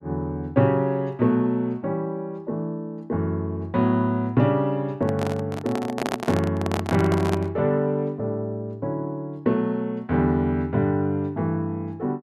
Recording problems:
microphone handling noise; from 5 to 7.5 s; peak +1 dB vs average level

